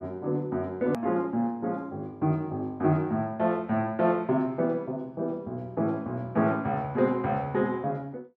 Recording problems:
edit click; at 1 s

